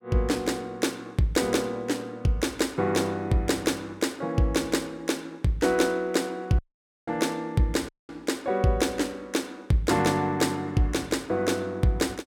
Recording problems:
audio cutting out; at 6.5 s and at 8 s

